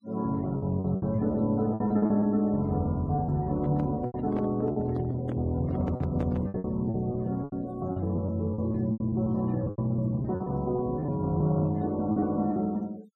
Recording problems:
noise reduction artefacts; signal-to-artefact ratio 27 dB
lost packets; 12% of the sound replaced, filled with repeated pitch periods
handling noise; from 3.5 to 6.5 s; peak -5 dB vs average level

